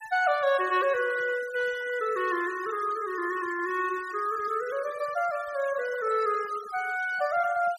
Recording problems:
denoising artefacts; signal-to-artefact ratio 19 dB

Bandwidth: 14 kHz